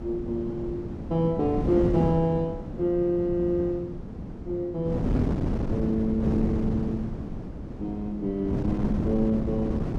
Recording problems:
wind noise; below 290 Hz, SNR 4 dB

